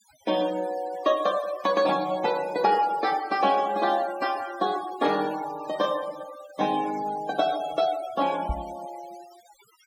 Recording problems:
noise reduction artefacts; signal-to-artefact ratio 16 dB
microphone thump; at 8.5 s; peak -1 dB vs average level

